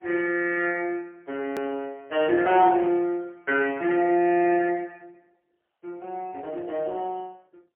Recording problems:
phone line; 190 Hz to 3.1 kHz, AMR-NB, then MP3
edit click; at 1.5 s

